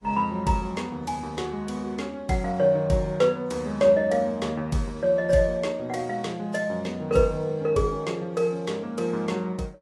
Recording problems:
lossy codec; AAC, log-spectral distance 2 dB, nothing above 11 kHz

